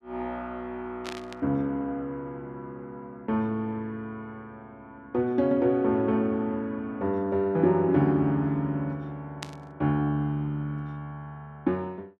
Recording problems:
burst of static; at 1 s and at 9.5 s; peak -4 dB vs average level

